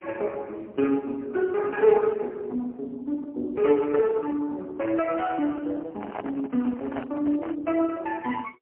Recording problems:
telephone audio; 220 Hz to 2.6 kHz, AMR-NB, then MP3
microphone handling noise; from 6 to 7.5 s; peak -4 dB vs average level

